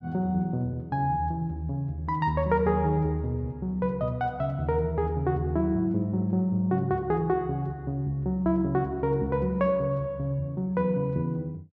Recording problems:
none

